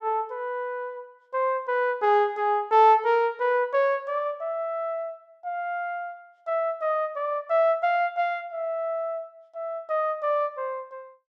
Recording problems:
none

